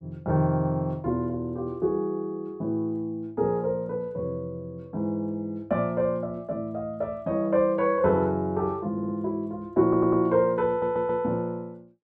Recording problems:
stutter; at 9 s, at 10 s and at 11 s

